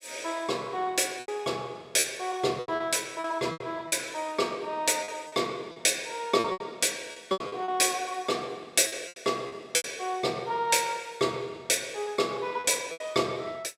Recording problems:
lost packets; 9% of the sound replaced, filled with repeated pitch periods

